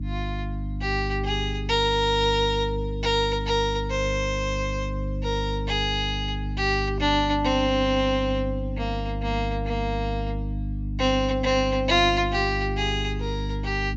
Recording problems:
treble missing; nothing above 7.6 kHz
hum; 50 Hz, harmonics up to 300 Hz, SNR 5 dB

